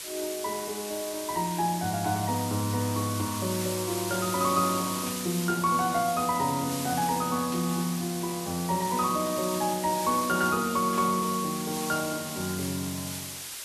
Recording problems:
background hiss; slope +2 dB per octave, SNR 6 dB
static burst; at 5 s, at 7.5 s and at 11 s; peak -9 dB vs average level

